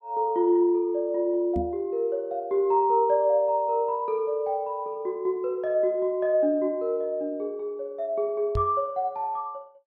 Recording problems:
knock on the microphone; at 1.5 s and at 8.5 s; peak -1 dB vs average level

